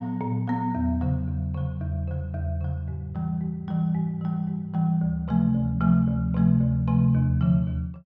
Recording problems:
none

